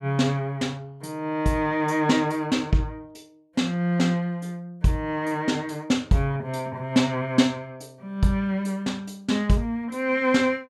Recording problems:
none

